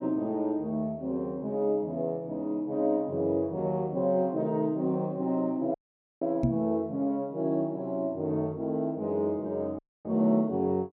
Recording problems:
dropout; at 5.5 s and at 10 s
microphone bump; at 6.5 s; peak +6 dB vs average level

